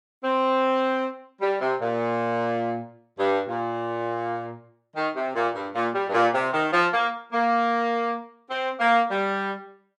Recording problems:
none

